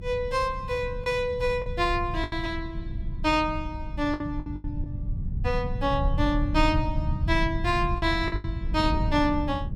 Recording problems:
rumble; below 110 Hz, SNR 5 dB
wind on the microphone; below 160 Hz, SNR 13 dB
packet loss; 6% of the sound replaced, filled with the last packet

